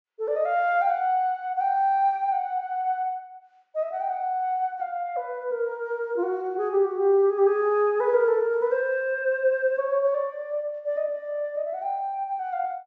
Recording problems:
treble cut off; nothing above 8 kHz

